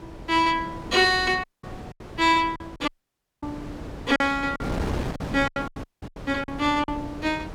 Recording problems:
wind on the microphone; below 570 Hz, SNR 12 dB
packet loss; 7% of the sound replaced, filled with silence
dropout; at 1.5 s, at 3 s for 0.5 s and at 6 s

